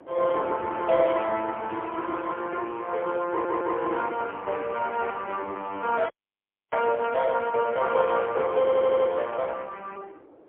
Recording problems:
phone line; 260 Hz to 3.5 kHz, AMR-NB, then MP3
wind noise; below 620 Hz, SNR 19 dB
stutter; at 3.5 s and at 8.5 s
audio cutting out; at 6 s for 0.5 s

